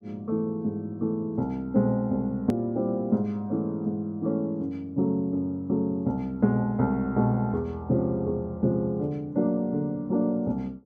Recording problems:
click at an edit; at 2.5 s

